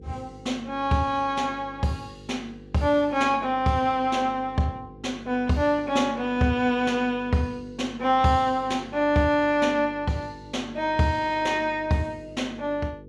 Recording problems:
hum; 50 Hz, harmonics up to 500 Hz, SNR 21 dB

